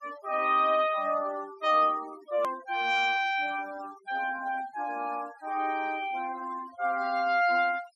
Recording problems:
noise reduction artefacts; signal-to-artefact ratio 20 dB
edit click; at 2.5 s

